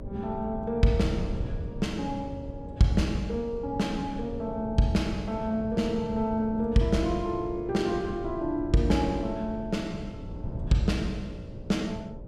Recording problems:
electrical hum; 60 Hz, harmonics up to 600 Hz, SNR 19 dB
wind on the microphone; below 160 Hz, SNR 11 dB

